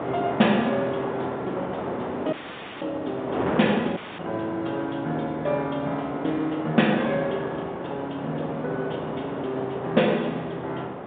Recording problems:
telephone audio; 130 Hz to 3.7 kHz, G.711
wind on the microphone; below 900 Hz, SNR 5 dB
dropout; at 2.5 s and at 4 s

